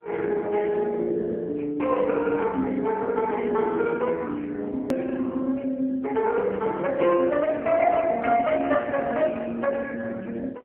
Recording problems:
telephone audio; 220 Hz to 2.1 kHz, AMR-NB
edit click; at 5 s

